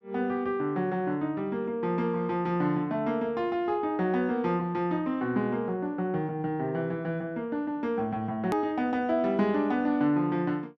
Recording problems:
edit click; at 8.5 s

